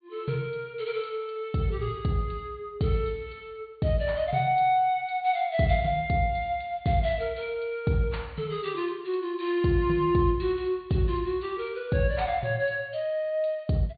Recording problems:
treble missing; nothing above 4.6 kHz

